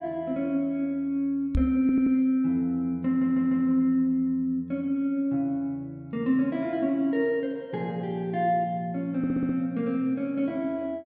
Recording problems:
microphone thump; at 1.5 s; peak +3 dB vs average level
stutter; at 2 s, at 3 s and at 9 s

